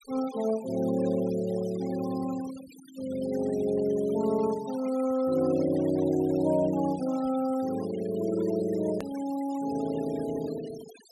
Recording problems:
noise reduction artefacts; signal-to-artefact ratio 19 dB
hard cut with a click; at 9 s

